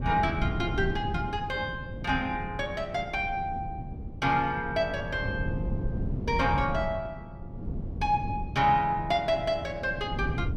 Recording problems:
wind on the microphone; below 190 Hz, SNR 7 dB

